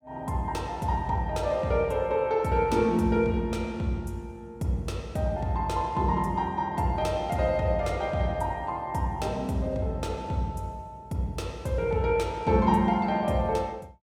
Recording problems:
none

